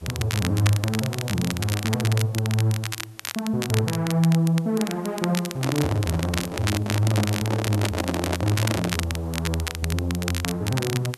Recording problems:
hiss; slope -2 dB per octave, SNR 28 dB
crackling; vinyl, SNR 7 dB
microphone handling noise; from 5.5 to 9 s; peak +1 dB vs average level

